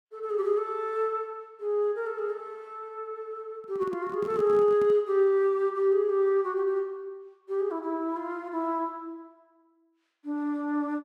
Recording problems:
microphone handling noise; from 3.5 to 5 s; peak -8 dB vs average level

